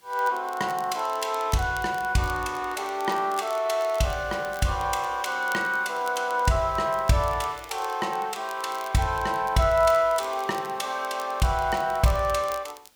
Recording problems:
background hiss; slope -1 dB per octave, SNR 30 dB
crackling; vinyl, SNR 21 dB

